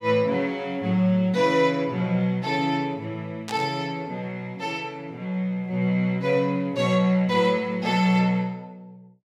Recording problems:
burst of static; at 3.5 s; peak -7 dB vs average level

